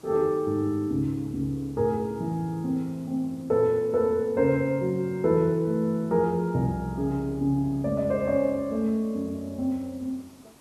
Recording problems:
hiss; SNR 27 dB

